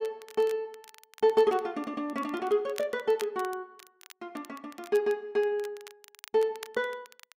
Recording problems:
crackling; vinyl, SNR 21 dB

